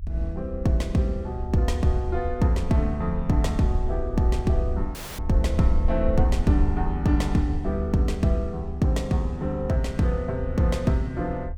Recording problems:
low-frequency rumble; below 74 Hz, SNR 6 dB
audio cutting out; at 5 s

